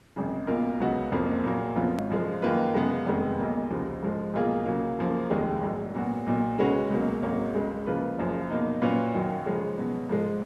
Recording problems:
background hiss; slope -4 dB per octave, SNR 30 dB
hard cut with a click; at 2 s

